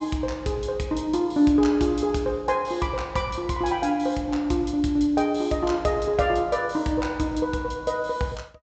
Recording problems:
low-pass filter; nothing above 8 kHz

